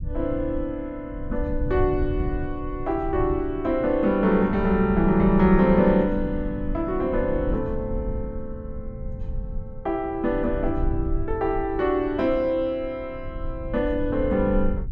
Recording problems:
low-frequency rumble; below 84 Hz, SNR 9 dB

